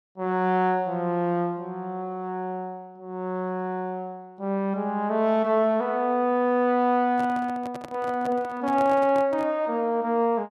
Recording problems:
microphone handling noise; from 7 to 9.5 s; peak -8 dB vs average level

